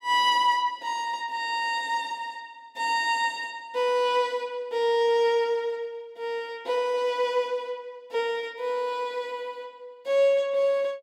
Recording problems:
none

